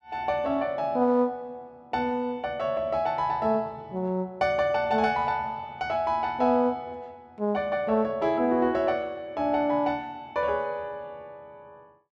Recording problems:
none

